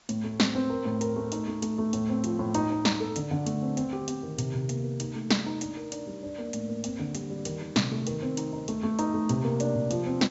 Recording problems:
treble cut off; nothing above 8 kHz
hiss; slope -2 dB per octave, SNR 27 dB

